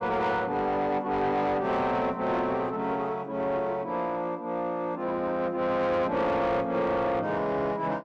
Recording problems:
distorted audio; soft clipping, signal-to-distortion ratio 10 dB

